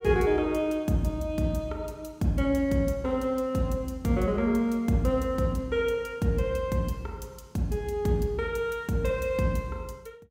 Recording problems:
none

